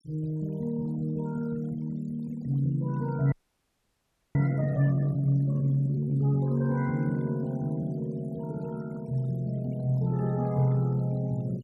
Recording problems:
noise reduction artefacts; signal-to-artefact ratio 26 dB
audio freezing; at 3.5 s for 1 s

